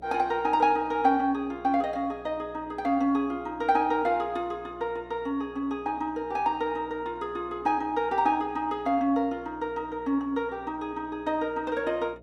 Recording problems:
electrical hum; 60 Hz, harmonics up to 720 Hz, SNR 23 dB

